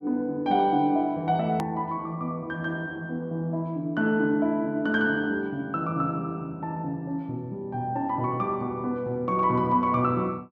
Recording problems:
hard cut with a click; at 1.5 s

